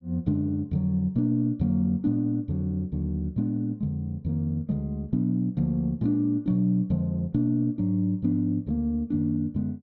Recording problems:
none

